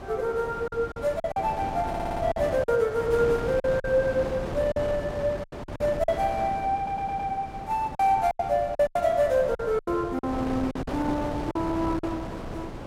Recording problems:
wind noise; below 720 Hz, SNR 9 dB
lost packets; 9% of the sound replaced, filled with silence
stutter; at 2 s and at 7 s

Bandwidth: 16 kHz